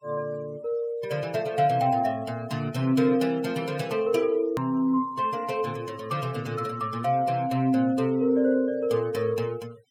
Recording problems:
denoising artefacts; signal-to-artefact ratio 24 dB
click at an edit; at 4.5 s

